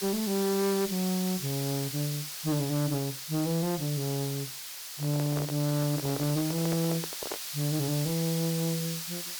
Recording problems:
distorted audio; hard clipping, uneven, signal-to-distortion ratio 10 dB
background hiss; slope +4 dB per octave, SNR 5 dB
handling noise; from 5 to 7.5 s; peak -3 dB vs average level

